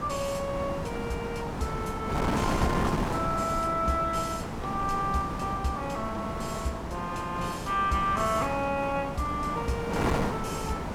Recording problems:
wind noise; below 950 Hz, SNR 2 dB

